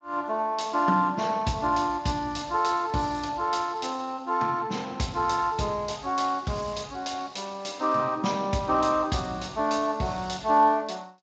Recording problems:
codec artefacts; Speex, log-spectral distance 4 dB, nothing above 7.3 kHz

